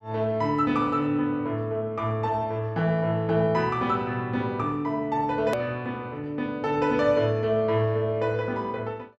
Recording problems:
hard cut with a click; at 5.5 s

